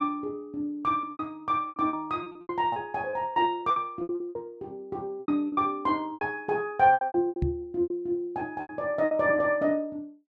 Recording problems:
packet loss; 15% of the sound replaced, filled with repeated pitch periods
knock on the microphone; at 7.5 s; peak +4 dB vs average level

